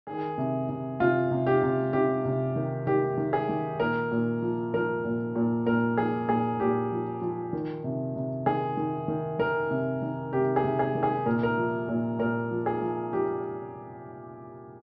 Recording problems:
treble cut off; nothing above 5.7 kHz

